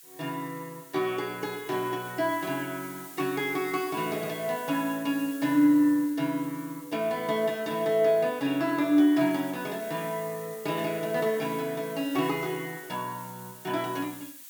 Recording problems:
hiss; SNR 17 dB

